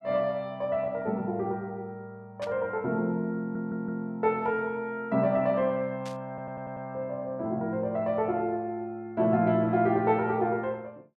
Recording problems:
burst of static; at 2.5 s and at 6 s; peak -9 dB vs average level
audio stuttering; at 3.5 s and at 6.5 s

